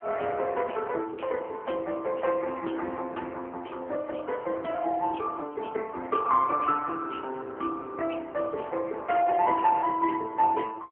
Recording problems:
telephone audio; 280 Hz to 3.3 kHz, AMR-NB

